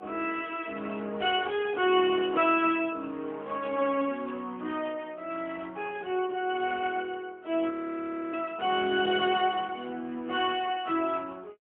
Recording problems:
telephone audio; 220 Hz to 3.6 kHz, AMR-NB, then MP3
audio freezing; at 7.5 s for 0.5 s

